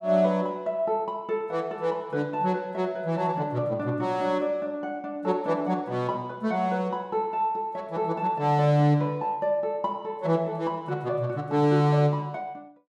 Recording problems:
none

